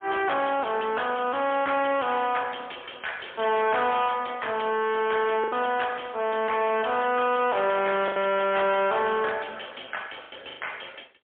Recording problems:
telephone audio; 240 Hz to 3.4 kHz, AMR-NB, then MP3
distorted audio; soft clipping, signal-to-distortion ratio 7 dB
lost packets; 3% of the sound replaced, filled with the last packet

